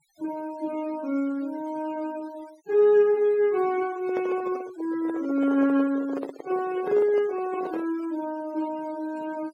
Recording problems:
noise reduction artefacts; signal-to-artefact ratio 22 dB
microphone handling noise; from 4 to 8 s; peak -4 dB vs average level

